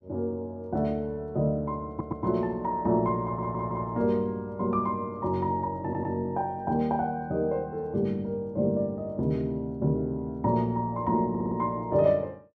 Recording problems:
audio stuttering; 4 times, first at 2 s

